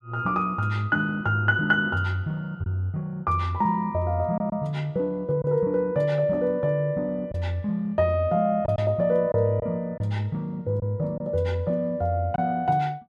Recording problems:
lost packets; 2% of the sound replaced, filled with silence

